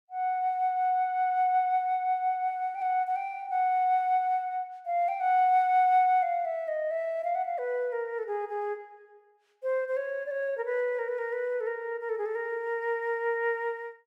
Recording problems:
none

